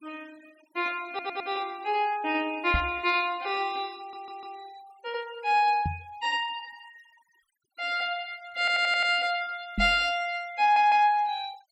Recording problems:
noise reduction artefacts; signal-to-artefact ratio 25 dB
stutter; 4 times, first at 1 s
microphone thump; at 2.5 s, at 6 s and at 10 s; peak +1 dB vs average level

